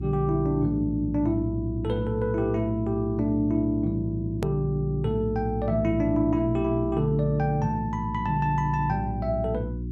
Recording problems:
electrical hum; 60 Hz, harmonics up to 360 Hz, SNR 8 dB
hard cut with a click; at 4.5 s

